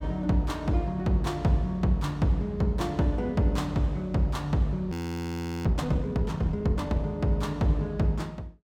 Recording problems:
frozen audio; at 5 s for 0.5 s

